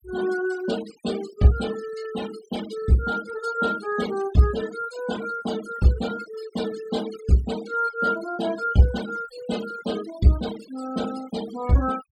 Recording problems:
noise reduction artefacts; signal-to-artefact ratio 15 dB

